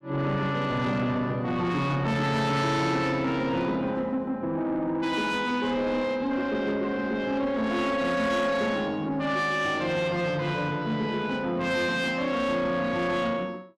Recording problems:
distortion; soft clipping, signal-to-distortion ratio 11 dB

